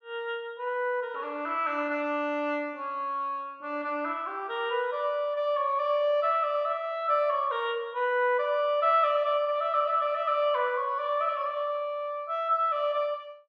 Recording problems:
none

